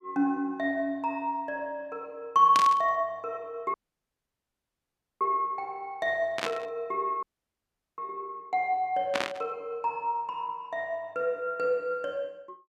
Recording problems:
static burst; at 2.5 s, at 6.5 s and at 9 s; peak +4 dB vs average level
audio cutting out; at 3.5 s for 1.5 s and at 7 s for 1 s

